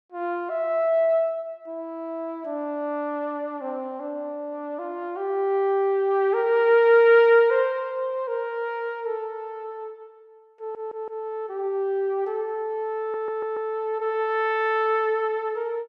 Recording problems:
stutter; at 11 s and at 13 s

